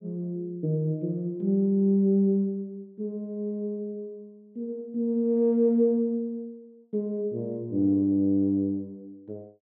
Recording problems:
none

